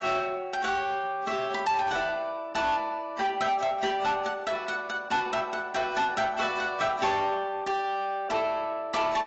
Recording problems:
lossy compression; AAC, log-spectral distance 3 dB, nothing above 7.6 kHz
distortion; soft clipping, signal-to-distortion ratio 11 dB

